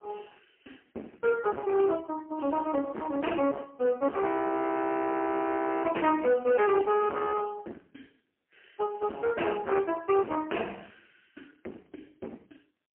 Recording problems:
telephone audio; 240 Hz to 2.9 kHz, AMR-NB, then MP3
distorted audio; hard clipping, signal-to-distortion ratio 6 dB
frozen audio; at 4.5 s for 1.5 s

